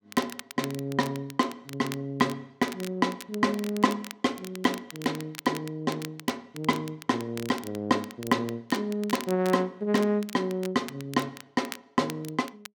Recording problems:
crackle; vinyl, SNR 14 dB

